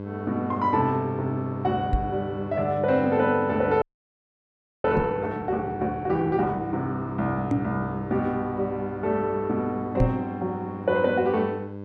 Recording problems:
hum; 50 Hz, harmonics up to 1.1 kHz, SNR 10 dB
microphone bump; 4 times, first at 2 s; peak +6 dB vs average level
frozen audio; at 4 s for 1 s

